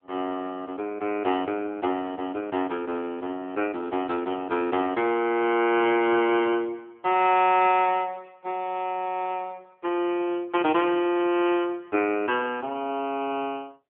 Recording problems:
phone line; 240 Hz to 3.3 kHz, AMR-NB

